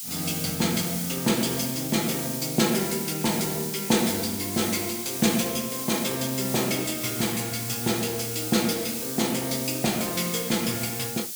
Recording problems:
hiss; SNR 4 dB

